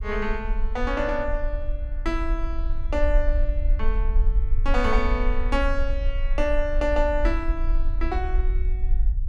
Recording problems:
rumble; below 44 Hz, SNR -1 dB

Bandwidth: 12.5 kHz